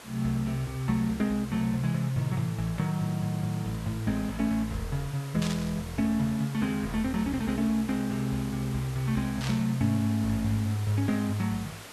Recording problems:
hiss; slope -2 dB per octave, SNR 15 dB
static burst; at 5.5 s and at 9.5 s; peak -3 dB vs average level

